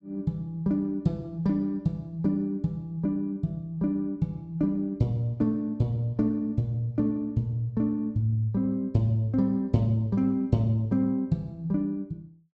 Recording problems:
none

